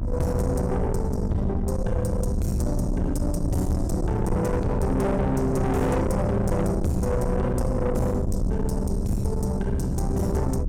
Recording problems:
distorted audio; soft clipping, signal-to-distortion ratio 8 dB
hum; 60 Hz, harmonics up to 1 kHz, SNR 9 dB
rumble; below 160 Hz, SNR 3 dB

